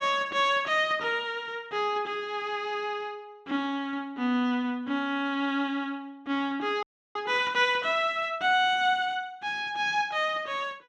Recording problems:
audio freezing; at 7 s

